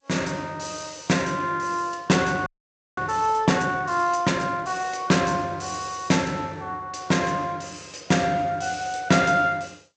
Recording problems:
lossy codec; G.722, log-spectral distance 5 dB, nothing above 7.8 kHz
audio freezing; at 2.5 s for 0.5 s

